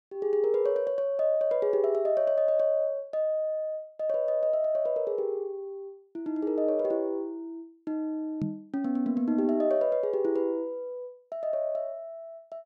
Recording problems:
microphone bump; at 8.5 s; peak -1 dB vs average level

